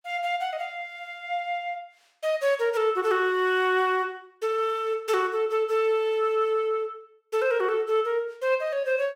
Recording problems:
none

